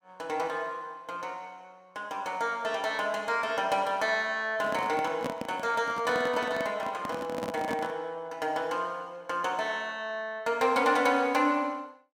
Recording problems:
handling noise; from 4.5 to 8 s; peak 0 dB vs average level

